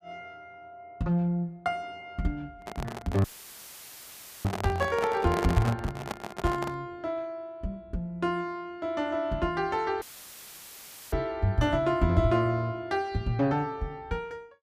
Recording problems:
handling noise; from 2.5 to 7 s; peak +2 dB vs average level
audio cutting out; at 3 s for 1 s and at 10 s for 1 s; filled with static

